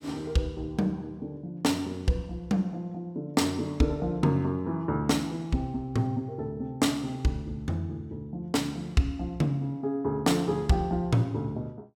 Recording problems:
none

